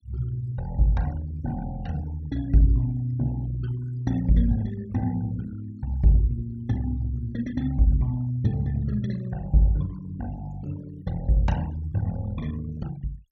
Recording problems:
noise reduction artefacts; signal-to-artefact ratio 22 dB

